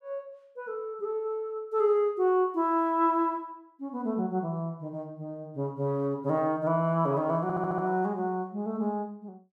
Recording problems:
stutter; at 7.5 s

